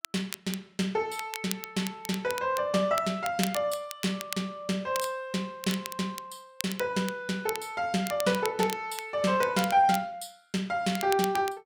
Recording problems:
crackling; vinyl, SNR 11 dB

